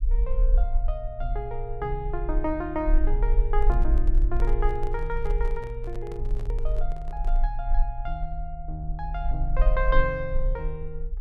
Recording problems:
rumble; below 42 Hz, SNR -3 dB
microphone handling noise; from 3.5 to 7.5 s; peak -3 dB vs average level

